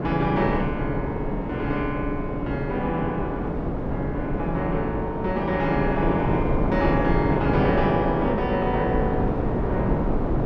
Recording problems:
wind noise; below 460 Hz, SNR 1 dB

